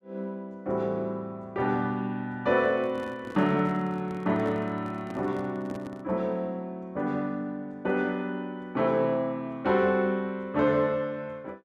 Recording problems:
microphone handling noise; from 2.5 to 6 s; peak -7 dB vs average level

